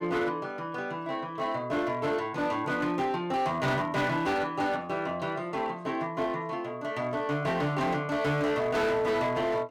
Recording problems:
distortion; hard clipping, signal-to-distortion ratio 11 dB

